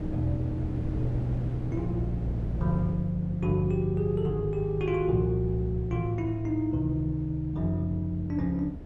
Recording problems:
wind on the microphone; below 250 Hz, SNR 10 dB

